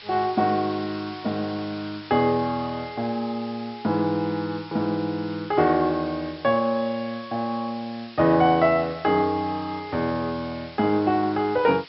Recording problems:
treble missing; nothing above 5.5 kHz
background hiss; SNR 19 dB

